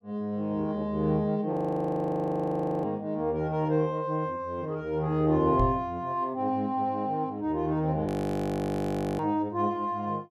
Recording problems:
audio freezing; at 1.5 s for 1.5 s and at 8 s for 1 s
knock on the microphone; at 5.5 s; peak +3 dB vs average level

